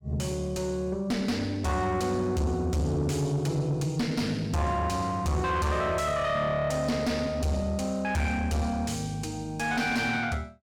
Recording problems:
distortion; soft clipping, signal-to-distortion ratio 6 dB

